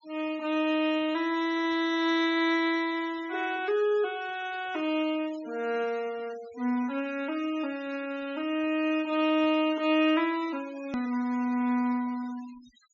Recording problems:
treble missing; nothing above 7.1 kHz
denoising artefacts; signal-to-artefact ratio 20 dB
hard cut with a click; at 11 s

